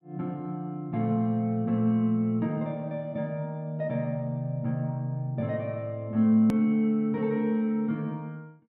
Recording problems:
click at an edit; at 6.5 s

